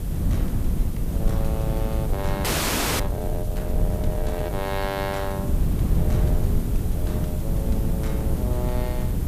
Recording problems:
background hiss; SNR 10 dB
wind on the microphone; below 140 Hz, SNR -7 dB
audio freezing; at 2.5 s for 0.5 s

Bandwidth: 14.5 kHz